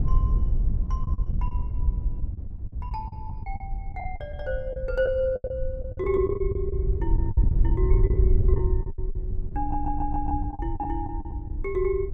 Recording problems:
wind on the microphone; below 76 Hz, SNR -2 dB
packet loss; 14% of the sound replaced, filled with the last packet
audio stuttering; at 9.5 s

